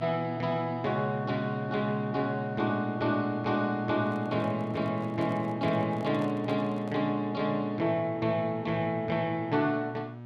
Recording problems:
electrical hum; 60 Hz, harmonics up to 1.6 kHz, SNR 11 dB
handling noise; from 4 to 7 s; peak -10 dB vs average level

